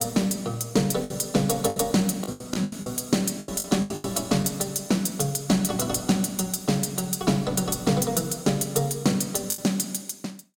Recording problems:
packet loss; 7% of the sound replaced, filled with the last packet

